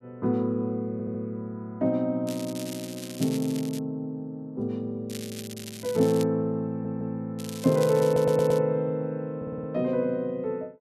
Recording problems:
stutter; 4 times, first at 1 s
crackle; from 2.5 to 4 s, from 5 to 6 s and from 7.5 to 8.5 s; loose cable, SNR 14 dB

